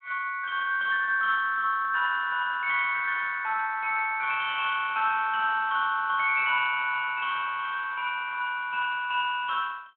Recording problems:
phone line; 220 Hz to 3.7 kHz, Speex

